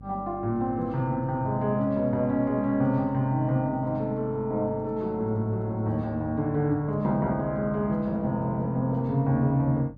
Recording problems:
hum; 50 Hz, harmonics up to 500 Hz, SNR 20 dB

